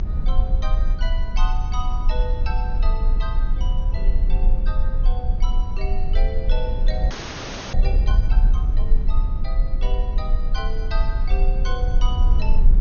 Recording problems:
low-pass filter; nothing above 6.7 kHz
rumble; below 44 Hz, strongest tone 28 Hz, SNR -11 dB
wind noise; below 140 Hz, SNR 12 dB
frozen audio; at 7 s for 0.5 s

